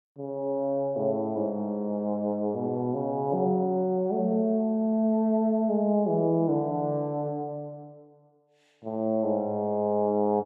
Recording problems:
none

